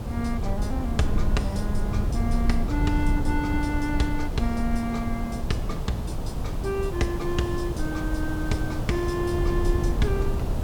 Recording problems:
hiss; SNR 7 dB
low-frequency rumble; below 98 Hz, SNR 0 dB

